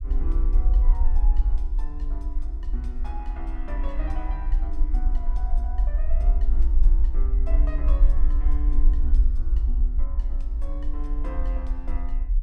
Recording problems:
low-frequency rumble; below 48 Hz, SNR -15 dB

